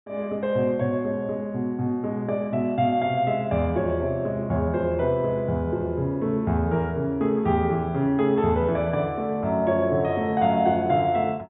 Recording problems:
treble cut off; nothing above 4 kHz

